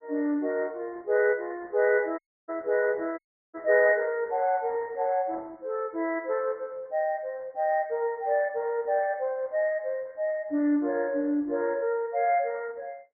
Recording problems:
lossy compression; Opus, log-spectral distance 2 dB, nothing above 2.2 kHz
dropout; at 2 s and at 3 s

